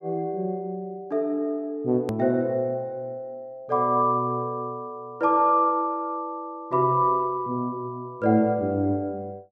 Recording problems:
click at an edit; at 2 s

